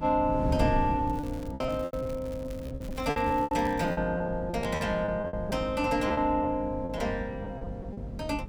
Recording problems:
mains hum; 50 Hz, harmonics up to 300 Hz, SNR 14 dB
wind noise; below 180 Hz, SNR 10 dB
packet loss; 12% of the sound replaced, filled with repeated pitch periods
crackle; from 1 to 4 s; loose cable, SNR 23 dB

